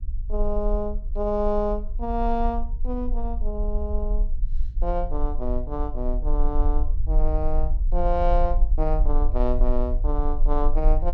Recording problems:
rumble; below 40 Hz, strongest tone 20 Hz, SNR -1 dB

